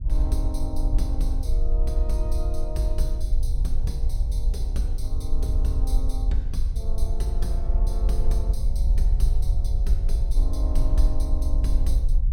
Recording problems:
rumble; below 52 Hz, SNR -8 dB

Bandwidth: 16.5 kHz